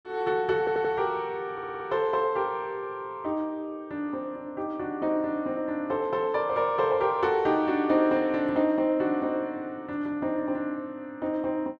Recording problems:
stutter; at 0.5 s and at 1.5 s

